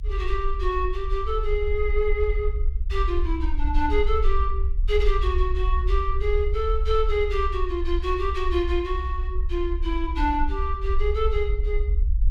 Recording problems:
low-frequency rumble; below 60 Hz, SNR 0 dB

